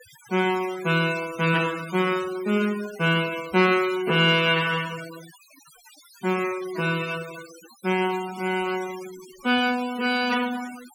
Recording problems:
noise reduction artefacts; signal-to-artefact ratio 17 dB

